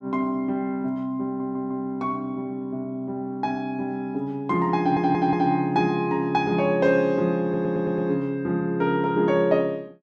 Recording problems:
stutter; at 1.5 s, at 5 s and at 7.5 s

